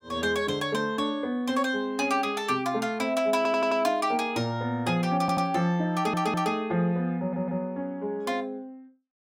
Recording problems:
stutter; 4 times, first at 3.5 s

